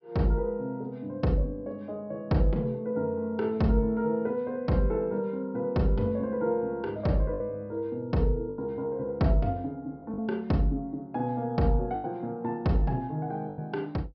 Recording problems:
treble missing; nothing above 5.5 kHz
packet loss; 3% of the sound replaced, filled with the last packet

